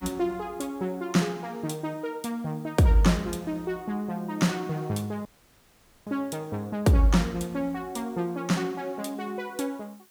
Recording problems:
background hiss; slope 0 dB per octave, SNR 28 dB
audio cutting out; at 5.5 s for 1 s

